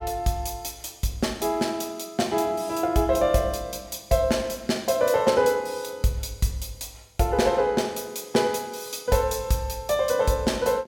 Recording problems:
none

